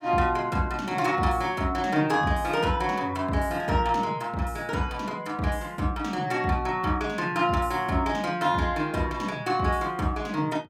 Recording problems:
none

